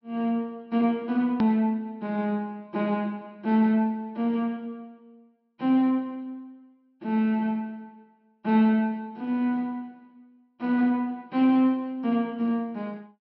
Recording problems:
treble missing; nothing above 5.5 kHz
edit click; at 1.5 s

